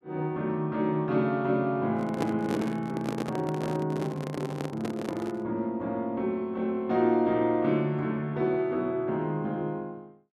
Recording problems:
handling noise; from 2 to 5.5 s; peak +2 dB vs average level

